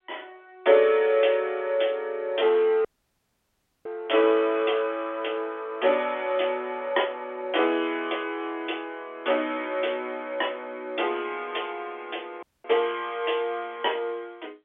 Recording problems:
phone line; 280 Hz to 3.5 kHz, G.711
dropout; at 3 s for 1 s and at 12 s

